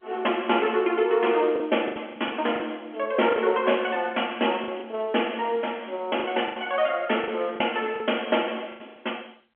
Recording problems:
phone line; 260 Hz to 3.4 kHz, G.711
packet loss; 8% of the sound replaced, filled with the last packet

